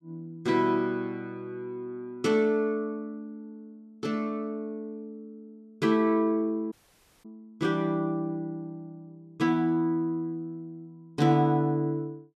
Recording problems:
audio cutting out; at 6.5 s for 0.5 s

